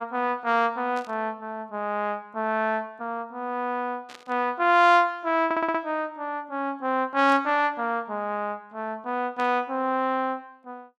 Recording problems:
burst of static; 4 times, first at 1 s; peak -12 dB vs average level
stutter; at 5.5 s

